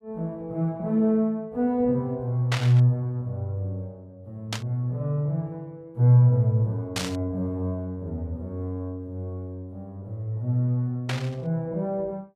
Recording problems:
burst of static; 4 times, first at 2.5 s; peak +1 dB vs average level

